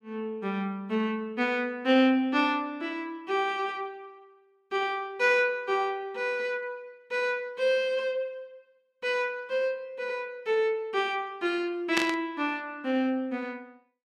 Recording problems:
burst of static; at 12 s; peak +5 dB vs average level

